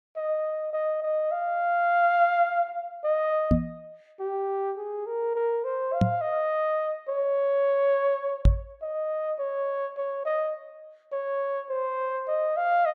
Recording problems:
microphone bump; at 3.5 s, at 6 s and at 8.5 s; peak +10 dB vs average level

